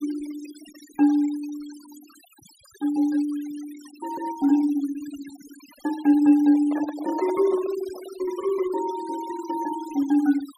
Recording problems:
noise reduction artefacts; signal-to-artefact ratio 21 dB
microphone handling noise; from 6.5 to 8 s; peak -7 dB vs average level

